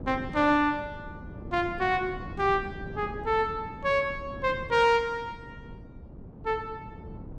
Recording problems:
wind noise; below 280 Hz, SNR 15 dB

